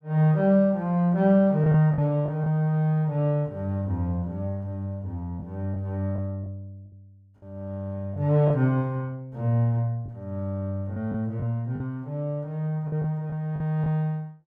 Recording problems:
lost packets; 4% of the sound replaced, filled with the last packet

